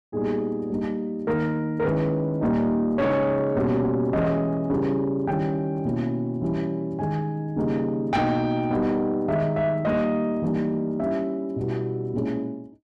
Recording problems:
distortion; soft clipping, signal-to-distortion ratio 12 dB

